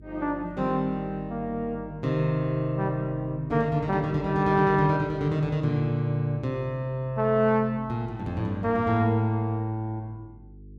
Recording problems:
hum; 50 Hz, harmonics up to 450 Hz, SNR 21 dB

